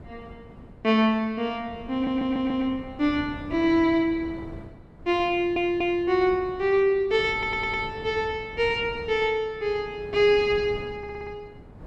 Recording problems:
wind on the microphone; below 340 Hz, SNR 18 dB
audio stuttering; 4 times, first at 2 s

